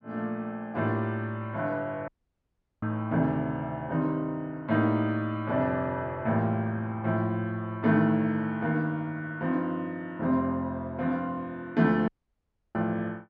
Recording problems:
audio cutting out; at 2 s for 0.5 s and at 12 s for 0.5 s

